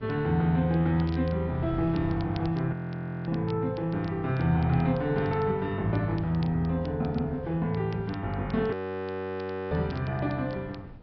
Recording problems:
treble missing; nothing above 5.5 kHz
mains hum; 60 Hz, harmonics up to 900 Hz, SNR 23 dB
wind on the microphone; below 250 Hz, SNR 20 dB
crackle; vinyl, SNR 26 dB
audio freezing; at 2.5 s for 0.5 s and at 8.5 s for 1 s

